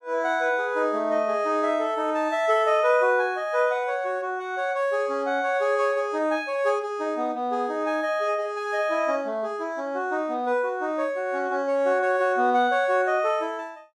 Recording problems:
none

